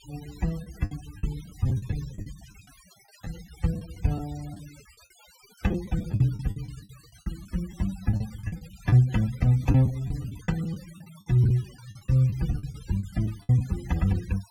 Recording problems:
denoising artefacts; signal-to-artefact ratio 22 dB
packet loss; 12% of the sound replaced, filled with the last packet

